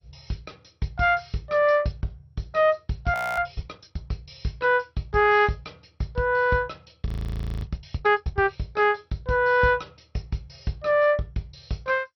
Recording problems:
codec artefacts; MP2, log-spectral distance 5 dB
audio freezing; at 3 s and at 7 s for 0.5 s

